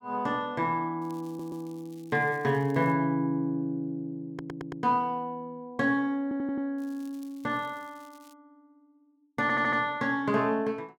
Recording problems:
crackle; from 1 to 3 s and from 7 to 8.5 s; loose cable, SNR 29 dB
stutter; 4 times, first at 1.5 s

